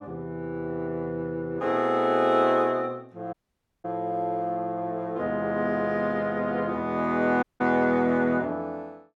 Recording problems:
dropout; at 3.5 s for 0.5 s and at 7.5 s

